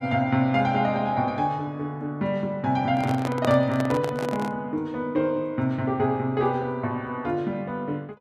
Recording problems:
handling noise; from 3 to 4.5 s; peak +1 dB vs average level

